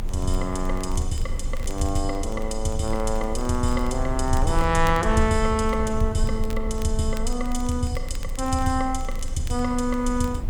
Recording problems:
hiss; slope -7 dB per octave, SNR 19 dB
rumble; below 50 Hz, strongest tone 24 Hz, SNR 6 dB
crackle; vinyl, SNR 22 dB

